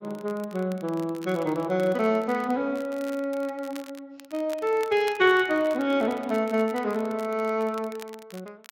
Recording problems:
lossy codec; Speex, log-spectral distance 2 dB
crackling; vinyl, SNR 22 dB

